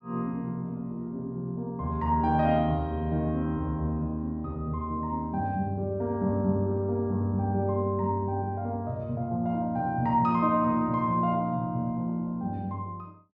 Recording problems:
none

